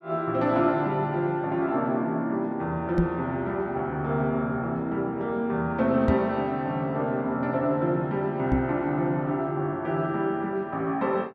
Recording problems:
microphone bump; at 3 s, at 6 s and at 8.5 s; peak +6 dB vs average level

